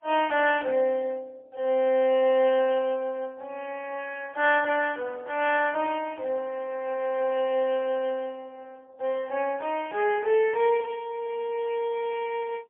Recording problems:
telephone audio; 340 Hz to 3.2 kHz, AMR-NB, then MP3

